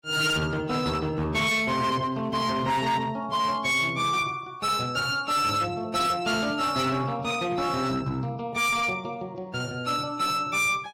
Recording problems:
lossy compression; AAC, log-spectral distance 2 dB, nothing above 15.5 kHz
distortion; hard clipping, signal-to-distortion ratio 10 dB

